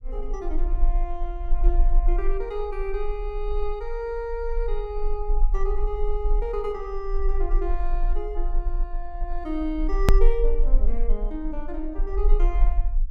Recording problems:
low-frequency rumble; below 34 Hz, strongest tone 24 Hz, SNR -4 dB
hard cut with a click; at 10 s

